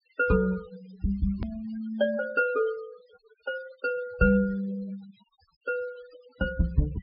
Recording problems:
treble missing; nothing above 5.5 kHz
denoising artefacts; signal-to-artefact ratio 20 dB
hard cut with a click; at 1.5 s

